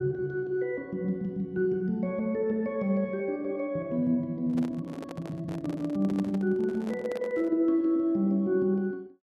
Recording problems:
handling noise; from 4.5 to 7.5 s; peak -8 dB vs average level

